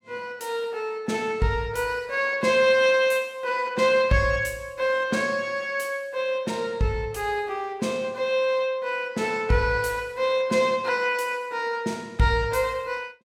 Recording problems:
none

